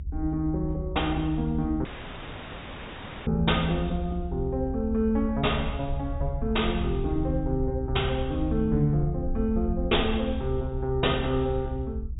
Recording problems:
treble missing; nothing above 4 kHz
low-frequency rumble; below 74 Hz, SNR 6 dB
audio cutting out; at 2 s for 1.5 s

